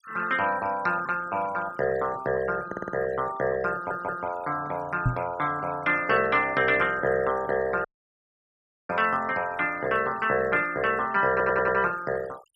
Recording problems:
denoising artefacts; signal-to-artefact ratio 20 dB
stutter; at 2.5 s, at 3.5 s and at 11 s
microphone thump; at 5 s; peak +4 dB vs average level
audio cutting out; at 8 s for 1 s

